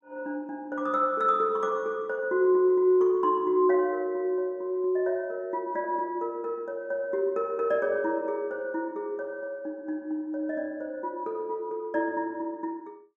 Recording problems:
none

